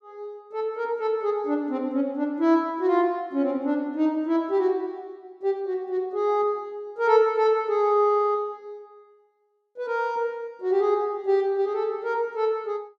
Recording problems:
none

